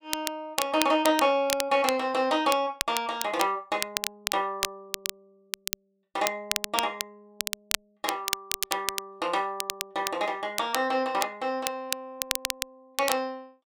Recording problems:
crackling; vinyl, SNR 4 dB

